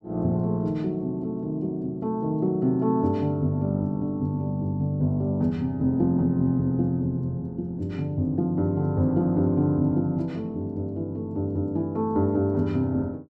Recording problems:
none

